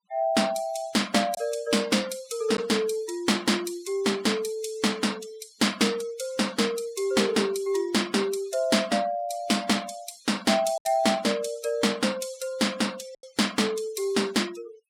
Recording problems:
noise reduction artefacts; signal-to-artefact ratio 19 dB
packet loss; 1.2% of the sound replaced, filled with silence

